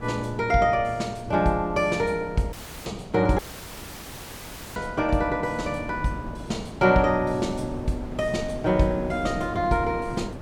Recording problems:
wind on the microphone; below 430 Hz, SNR 13 dB
audio cutting out; at 2.5 s and at 3.5 s for 1.5 s

